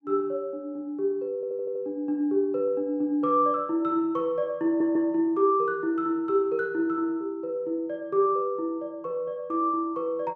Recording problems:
stutter; at 1.5 s and at 4.5 s

